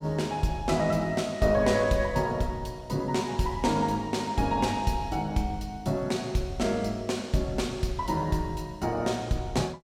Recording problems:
none

